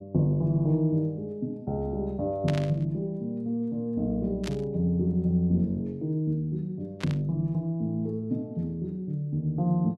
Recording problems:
static burst; at 2.5 s, at 4.5 s and at 7 s; peak -4 dB vs average level

